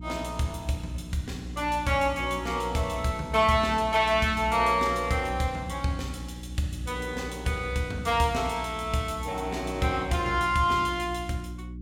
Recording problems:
hum; 60 Hz, harmonics up to 360 Hz, SNR 12 dB

